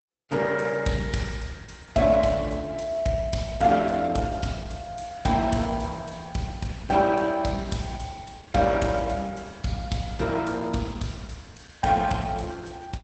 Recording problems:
codec artefacts; Opus, log-spectral distance 4 dB, nothing above 8 kHz

